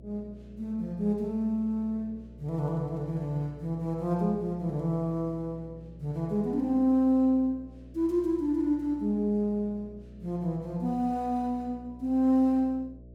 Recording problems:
mains hum; 60 Hz, harmonics up to 660 Hz, SNR 20 dB

